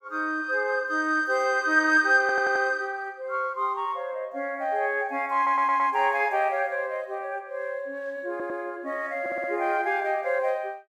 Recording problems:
audio stuttering; 4 times, first at 2 s

